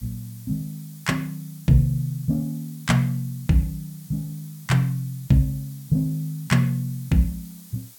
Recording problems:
background hiss; SNR 21 dB

